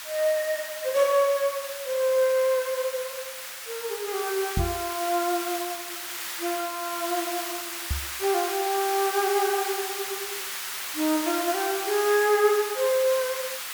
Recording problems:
hiss; SNR 6 dB
microphone bump; at 4.5 s and at 8 s; peak +2 dB vs average level

